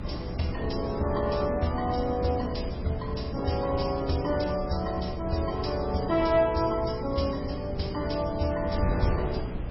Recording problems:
lossy compression; MP3, log-spectral distance 5 dB, nothing above 5.5 kHz
hum; 60 Hz, harmonics up to 300 Hz, SNR 11 dB
wind on the microphone; below 280 Hz, SNR 8 dB

